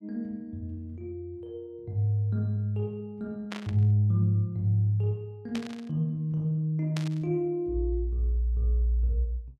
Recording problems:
static burst; at 3.5 s, at 5.5 s and at 7 s; peak -4 dB vs average level

